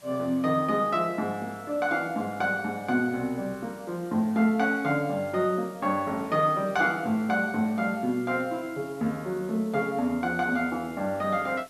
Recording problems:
background hiss; slope -1 dB per octave, SNR 25 dB

